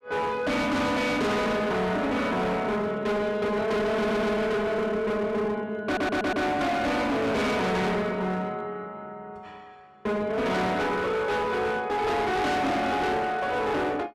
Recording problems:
distortion; hard clipping, signal-to-distortion ratio 6 dB
stutter; at 4 s and at 6 s

